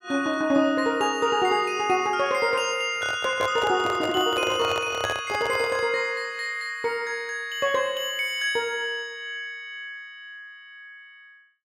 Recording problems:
microphone handling noise; from 3 to 6 s; peak 0 dB vs average level

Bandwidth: 16 kHz